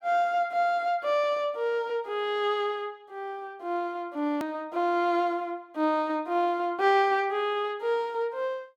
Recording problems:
edit click; at 4.5 s

